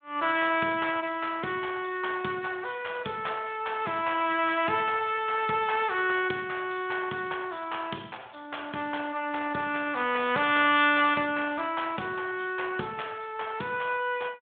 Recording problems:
telephone audio; 240 Hz to 3.4 kHz, Speex

